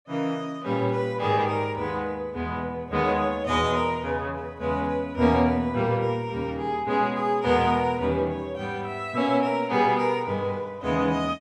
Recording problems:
none

